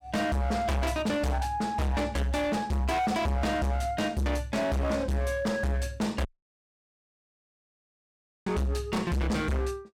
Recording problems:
distortion; hard clipping, signal-to-distortion ratio 6 dB
audio cutting out; at 6.5 s for 2 s

